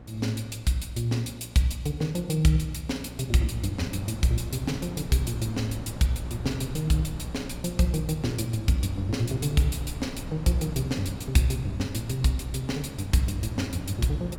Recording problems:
hum; 60 Hz, harmonics up to 1.1 kHz, SNR 16 dB
wind on the microphone; below 290 Hz, SNR 14 dB

